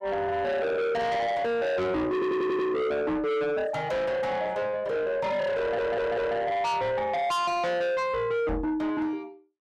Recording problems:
distorted audio; soft clipping, signal-to-distortion ratio 7 dB
audio stuttering; at 2 s and at 5.5 s
knock on the microphone; at 8.5 s; peak -1 dB vs average level

